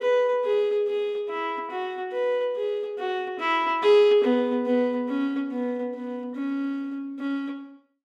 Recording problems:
none

